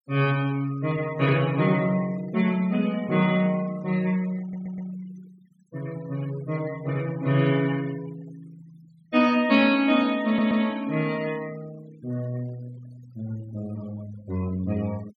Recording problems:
denoising artefacts; signal-to-artefact ratio 22 dB
stutter; at 4.5 s and at 10 s

